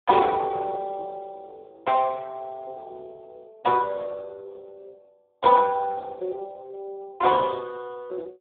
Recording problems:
telephone audio; 300 Hz to 2.1 kHz, Speex

